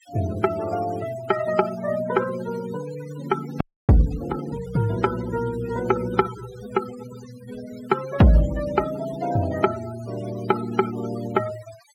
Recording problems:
noise reduction artefacts; signal-to-artefact ratio 15 dB
frozen audio; at 3.5 s

